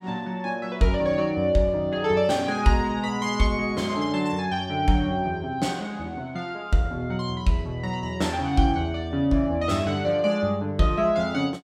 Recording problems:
none

